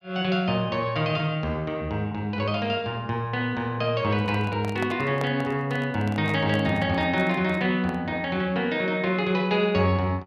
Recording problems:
handling noise; from 4 to 8 s; peak -4 dB vs average level

